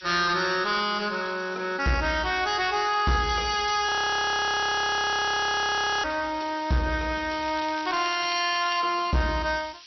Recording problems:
lossy compression; MP2, log-spectral distance 13 dB, nothing above 5.8 kHz
distortion; soft clipping, signal-to-distortion ratio 11 dB
background hiss; SNR 21 dB
audio freezing; at 4 s for 2 s
crackling; from 7.5 to 9 s; loose cable, SNR 16 dB

